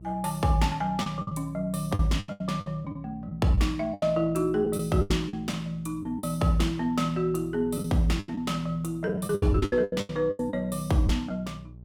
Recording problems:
electrical hum; 60 Hz, harmonics up to 420 Hz, SNR 19 dB
lost packets; 12% of the sound replaced, filled with the last packet

